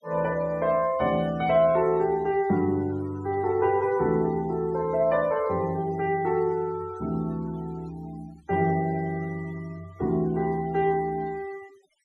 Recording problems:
noise reduction artefacts; signal-to-artefact ratio 23 dB

